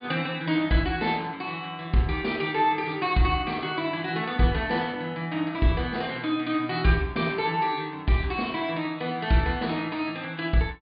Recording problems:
treble cut off; nothing above 4.7 kHz

